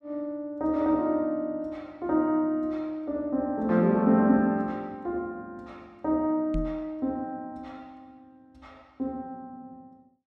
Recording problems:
microphone thump; at 6.5 s; peak -2 dB vs average level

